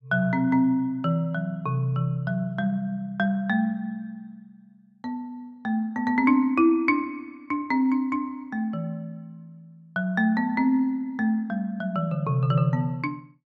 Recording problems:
none

